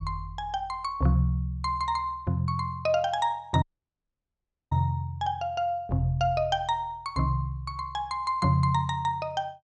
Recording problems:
audio cutting out; at 3.5 s for 1 s

